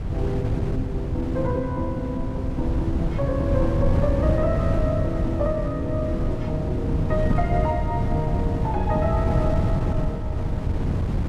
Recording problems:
wind noise; below 160 Hz, SNR -2 dB

